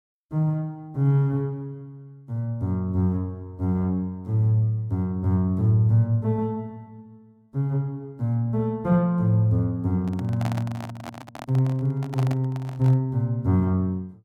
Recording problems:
handling noise; from 10 to 13 s; peak -5 dB vs average level

